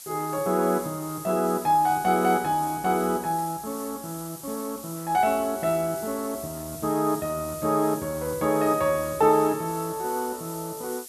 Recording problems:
background hiss; SNR 13 dB

